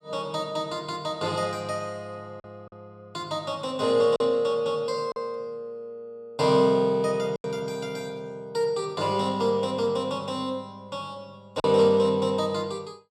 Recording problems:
packet loss; 2% of the sound replaced, filled with silence

